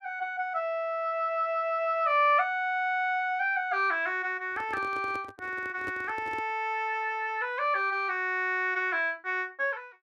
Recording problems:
microphone handling noise; from 4.5 to 6.5 s; peak -8 dB vs average level

